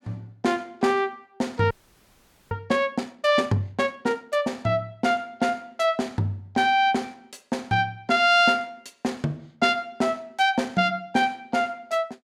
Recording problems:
audio freezing; at 1.5 s for 1 s

